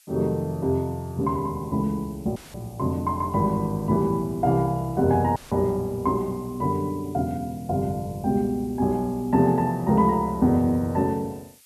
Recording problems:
background hiss; slope +5 dB per octave, SNR 27 dB
audio cutting out; at 2.5 s and at 5.5 s; filled with static

